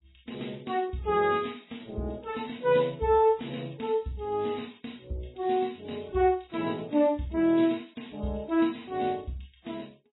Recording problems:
lossy compression; AAC, then MP3, log-spectral distance 7 dB, nothing above 3.9 kHz

